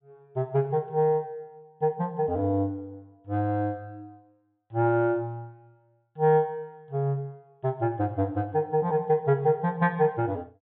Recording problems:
treble cut off; nothing above 4 kHz

